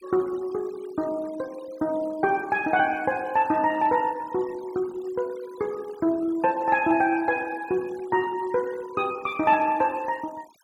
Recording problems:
denoising artefacts; signal-to-artefact ratio 22 dB

